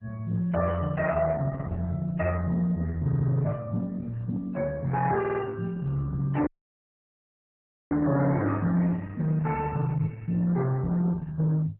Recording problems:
lossy compression; MP3, then Opus, log-spectral distance 2 dB
distorted audio; hard clipping, uneven, signal-to-distortion ratio 11 dB
stutter; at 3 s and at 5 s
audio cutting out; at 6.5 s for 1.5 s
microphone thump; at 11 s; peak -2 dB vs average level

